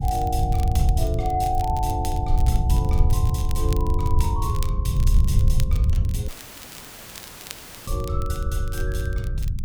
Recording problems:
rumble; below 94 Hz, SNR -6 dB
crackling; vinyl, SNR 13 dB
dropout; at 6.5 s for 1.5 s; filled with static

